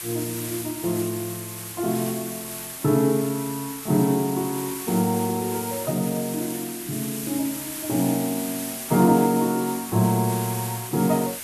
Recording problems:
lossy codec; Vorbis, log-spectral distance 15 dB, nothing above 13.1 kHz
hiss; slope +1 dB per octave, SNR 8 dB

